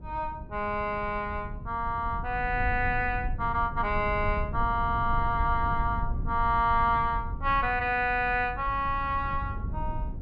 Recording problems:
low-frequency rumble; below 100 Hz, SNR 8 dB

